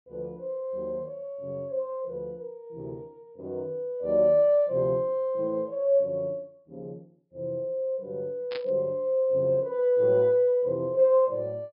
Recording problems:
treble missing; nothing above 5.5 kHz
static burst; at 8.5 s; peak -8 dB vs average level

